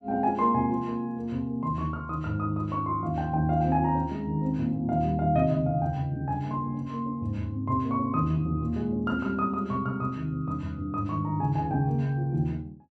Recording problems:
none

